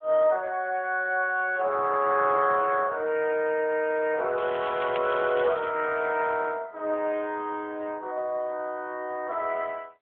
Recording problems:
telephone audio; 340 Hz to 3.3 kHz, AMR-NB
crackling; from 4.5 to 5.5 s; loose cable, SNR 15 dB

